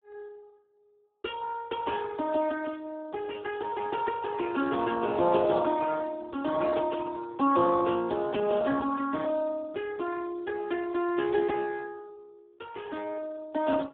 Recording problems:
telephone audio; 190 Hz to 2.7 kHz, Speex

